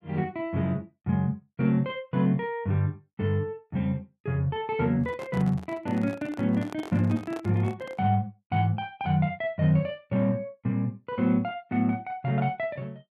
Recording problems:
handling noise; from 5 to 8 s; peak -8 dB vs average level

